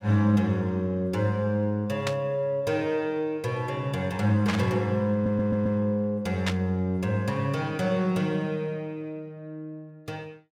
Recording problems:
burst of static; at 2 s, at 4.5 s and at 6.5 s; peak +1 dB vs average level
audio stuttering; at 5 s

